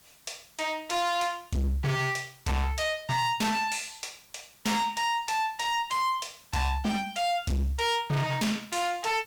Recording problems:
distortion; hard clipping, uneven, signal-to-distortion ratio 6 dB
background hiss; SNR 27 dB

